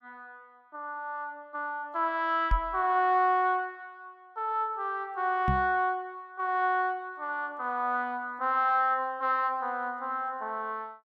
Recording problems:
microphone bump; at 2.5 s and at 5.5 s; peak +3 dB vs average level

